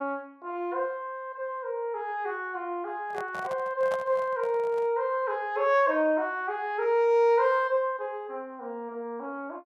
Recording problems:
handling noise; from 3 to 5 s; peak -5 dB vs average level

